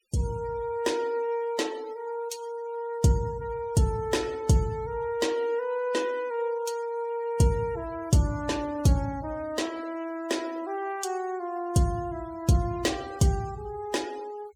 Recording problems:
denoising artefacts; signal-to-artefact ratio 19 dB

